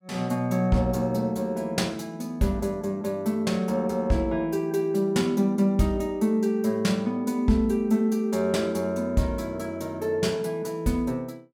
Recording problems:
none

